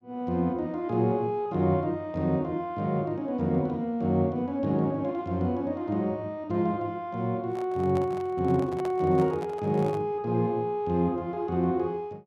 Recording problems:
microphone handling noise; from 7.5 to 10 s; peak -6 dB vs average level

